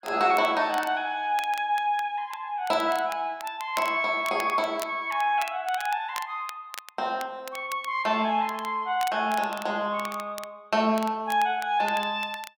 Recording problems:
crackle; vinyl, SNR 17 dB

